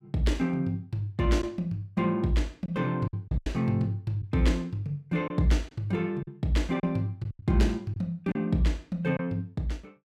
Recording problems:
packet loss; 5% of the sound replaced, filled with silence

